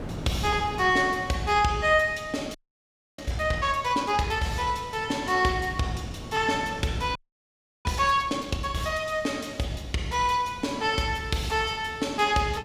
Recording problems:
wind on the microphone; below 380 Hz, SNR 17 dB
frozen audio; at 2.5 s for 0.5 s and at 7 s for 0.5 s

